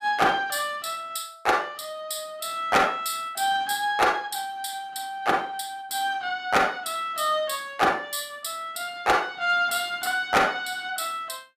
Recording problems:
distorted audio; hard clipping, uneven, signal-to-distortion ratio 11 dB

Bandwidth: 15.5 kHz